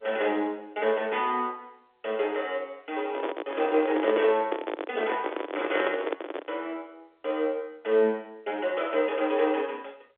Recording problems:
telephone audio; 260 Hz to 3.7 kHz, G.711
microphone handling noise; from 3 to 6.5 s; peak +3 dB vs average level

